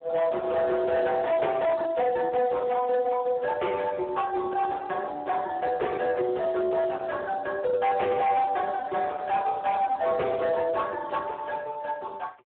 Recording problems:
phone line; 170 Hz to 2.2 kHz, Speex
distorted audio; hard clipping, signal-to-distortion ratio 10 dB

